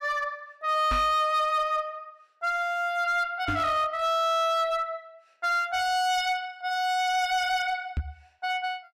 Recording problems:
distorted audio; hard clipping, uneven, signal-to-distortion ratio 11 dB
microphone thump; at 1 s, at 3.5 s and at 8 s; peak 0 dB vs average level

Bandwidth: 14.5 kHz